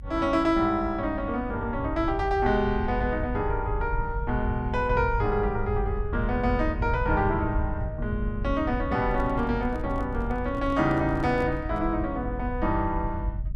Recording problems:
low-frequency rumble; below 94 Hz, SNR 6 dB
handling noise; from 9 to 12 s; peak -8 dB vs average level

